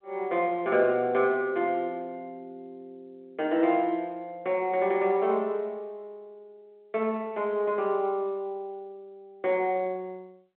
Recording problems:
phone line; 240 Hz to 3.5 kHz, G.711

